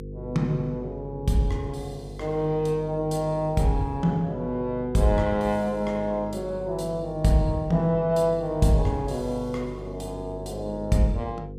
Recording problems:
hum; 50 Hz, harmonics up to 500 Hz, SNR 13 dB

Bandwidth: 15 kHz